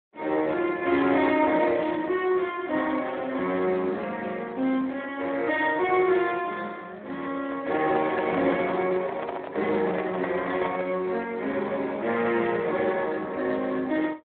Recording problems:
telephone audio; 240 Hz to 3.7 kHz, Speex
microphone handling noise; from 7.5 to 11 s; peak -2 dB vs average level

